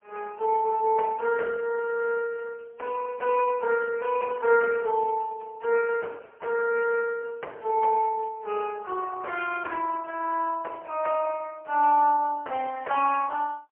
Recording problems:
phone line; 370 Hz to 3.1 kHz, AMR-NB, then MP3

